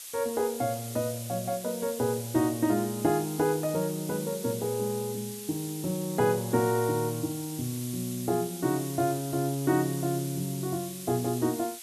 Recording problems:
hiss; slope +4 dB per octave, SNR 10 dB

